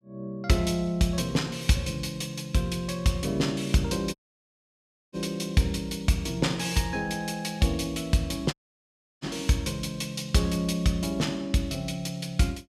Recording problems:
audio cutting out; at 4 s for 1 s and at 8.5 s for 0.5 s

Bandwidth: 14.5 kHz